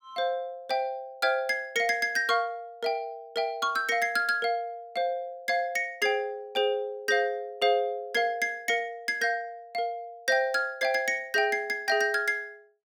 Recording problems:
none

